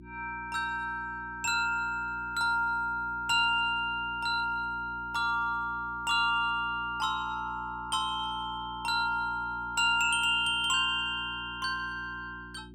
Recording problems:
electrical hum; 60 Hz, harmonics up to 360 Hz, SNR 20 dB

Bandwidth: 16.5 kHz